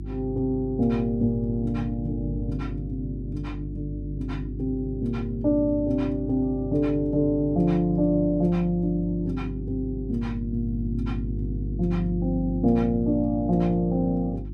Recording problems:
electrical hum; 50 Hz, harmonics up to 350 Hz, SNR 8 dB

